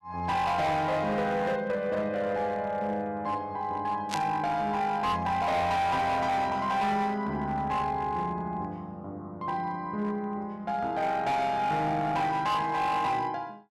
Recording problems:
distortion; hard clipping, signal-to-distortion ratio 10 dB
burst of static; at 4 s; peak 0 dB vs average level

